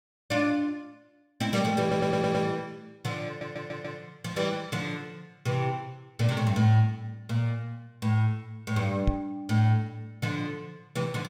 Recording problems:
audio stuttering; at 2 s and at 3.5 s
microphone bump; at 9 s; peak +6 dB vs average level

